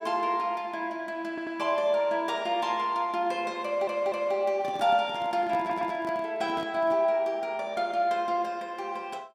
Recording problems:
audio stuttering; at 1.5 s, at 3.5 s and at 5.5 s
handling noise; from 4.5 to 7 s; peak -7 dB vs average level

